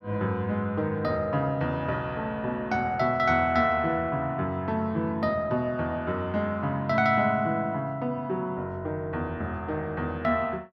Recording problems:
none

